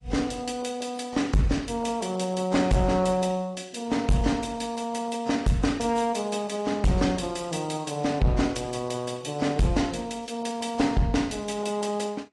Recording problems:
lossy codec; AAC, log-spectral distance 4 dB, nothing above 10.7 kHz
distorted audio; hard clipping, uneven, signal-to-distortion ratio 11 dB

